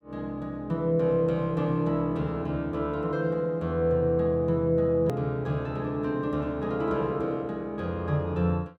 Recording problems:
edit click; at 5 s

